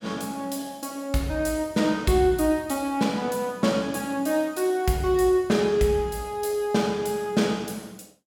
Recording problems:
none

